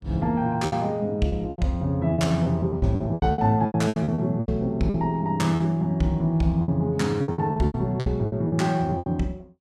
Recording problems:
lost packets; 16% of the sound replaced, filled with repeated pitch periods

